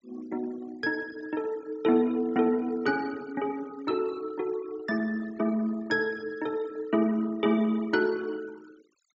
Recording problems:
treble cut off; nothing above 8 kHz
noise reduction artefacts; signal-to-artefact ratio 24 dB

